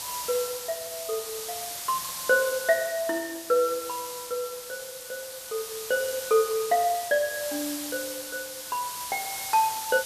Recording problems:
hiss; slope +1 dB per octave, SNR 6 dB

